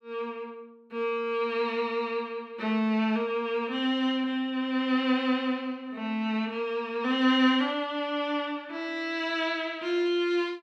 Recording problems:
none

